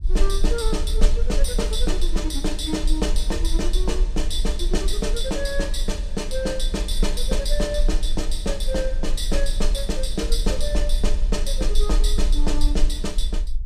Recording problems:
rumble; below 42 Hz, strongest tone 18 Hz, SNR -1 dB

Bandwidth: 14.5 kHz